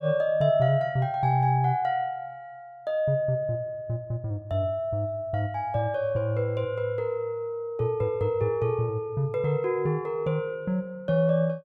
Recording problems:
none

